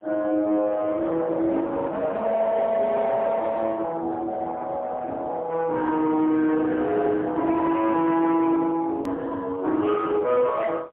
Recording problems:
telephone audio; 240 Hz to 3.7 kHz, AMR-NB, then MP3
distorted audio; soft clipping, signal-to-distortion ratio 10 dB
click at an edit; at 9 s

